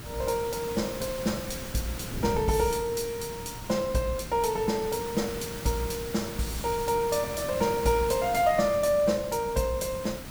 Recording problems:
background hiss; slope -3 dB per octave, SNR 11 dB
wind on the microphone; below 230 Hz, SNR 14 dB

